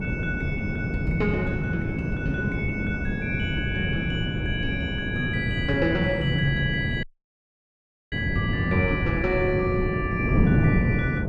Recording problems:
wind on the microphone; below 250 Hz, SNR 0 dB
dropout; at 7 s for 1 s

